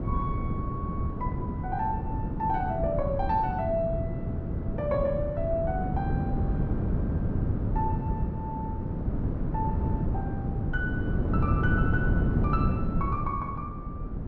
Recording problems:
treble cut off; nothing above 6.3 kHz
wind noise; below 220 Hz, SNR -3 dB

